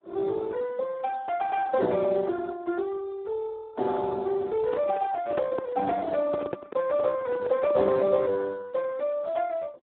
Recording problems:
telephone audio; 280 Hz to 2.1 kHz, Speex
microphone handling noise; from 4.5 to 8 s; peak +1 dB vs average level

